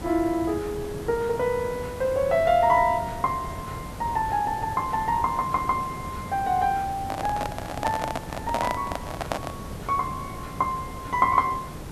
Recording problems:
hiss; slope -6 dB per octave, SNR 11 dB
handling noise; from 7 to 9.5 s; peak +2 dB vs average level

